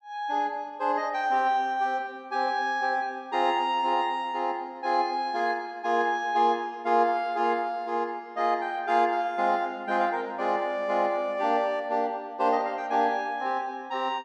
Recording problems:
none

